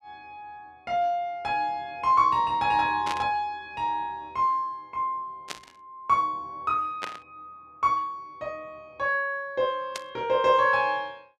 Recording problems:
static burst; 4 times, first at 3 s; peak -3 dB vs average level

